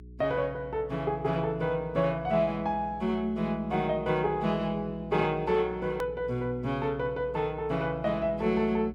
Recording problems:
electrical hum; 60 Hz, harmonics up to 420 Hz, SNR 18 dB
click at an edit; at 6 s

